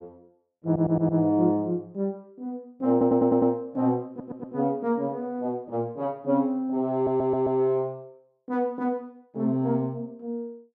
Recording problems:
audio stuttering; 4 times, first at 0.5 s

